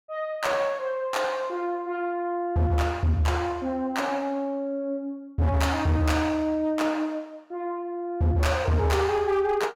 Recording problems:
distortion; hard clipping, signal-to-distortion ratio 12 dB

